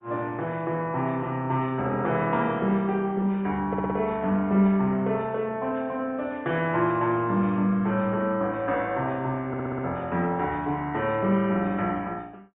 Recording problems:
treble missing; nothing above 3.7 kHz
lossy compression; Opus, log-spectral distance 2 dB
stutter; at 3.5 s and at 9.5 s

